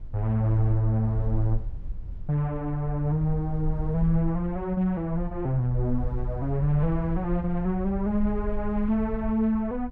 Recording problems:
low-frequency rumble; below 52 Hz, SNR 10 dB

